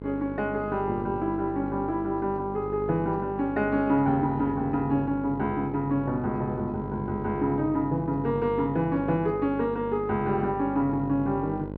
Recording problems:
hum; 50 Hz, harmonics up to 1.1 kHz, SNR 10 dB

